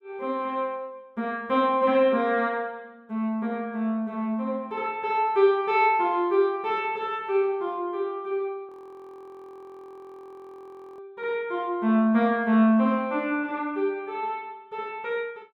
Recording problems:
frozen audio; at 8.5 s for 2.5 s

